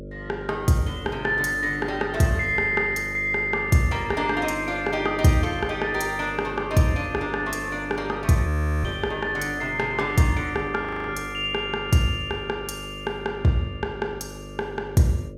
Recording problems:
hum; 50 Hz, harmonics up to 600 Hz, SNR 14 dB
audio freezing; at 8.5 s and at 11 s

